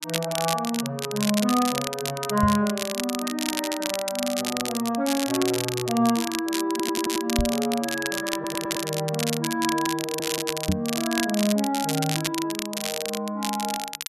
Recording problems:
crackling; vinyl, SNR 4 dB
knock on the microphone; at 2.5 s, at 7.5 s and at 11 s; peak +6 dB vs average level
stutter; at 6.5 s, at 8.5 s and at 10 s

